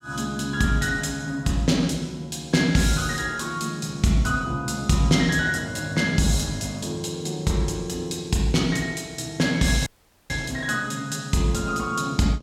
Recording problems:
dropout; at 10 s

